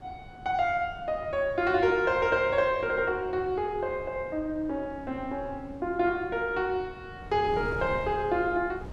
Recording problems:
wind noise; below 300 Hz, SNR 17 dB

